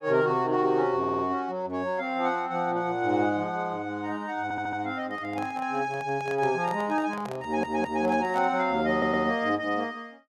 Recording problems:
stutter; 4 times, first at 1 s
handling noise; from 5 to 8.5 s; peak -8 dB vs average level

